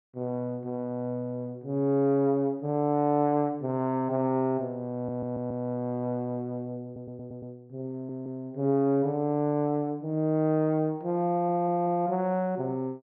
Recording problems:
stutter; 4 times, first at 5 s

